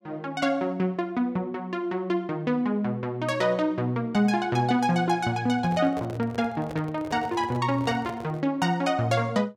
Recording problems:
microphone handling noise; from 5.5 to 8.5 s; peak -8 dB vs average level

